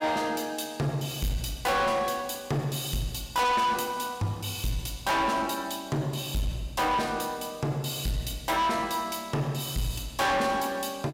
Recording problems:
distorted audio; soft clipping, signal-to-distortion ratio 7 dB

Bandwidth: 16 kHz